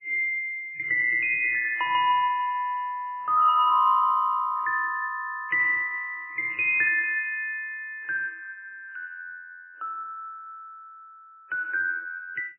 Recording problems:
codec artefacts; MP3, log-spectral distance 3 dB, nothing above 2.5 kHz

